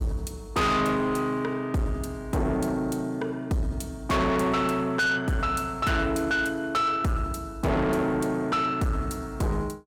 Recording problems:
distorted audio; soft clipping, signal-to-distortion ratio 7 dB

